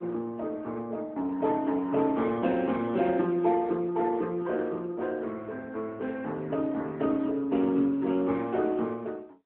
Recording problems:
telephone audio; 130 Hz to 3.5 kHz, AMR-NB

